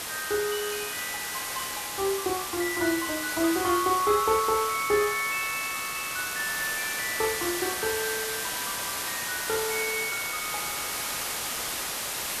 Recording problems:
background hiss; slope -1 dB per octave, SNR 2 dB

